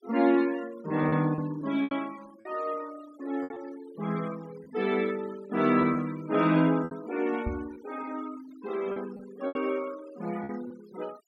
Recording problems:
denoising artefacts; signal-to-artefact ratio 19 dB
packet loss; 6% of the sound replaced, filled with repeated pitch periods
microphone thump; at 7.5 s; peak 0 dB vs average level

